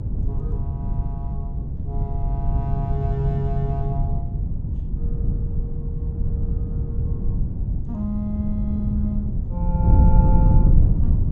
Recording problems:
treble missing; nothing above 8 kHz
hum; 60 Hz, harmonics up to 480 Hz, SNR 16 dB
wind on the microphone; below 110 Hz, SNR -7 dB

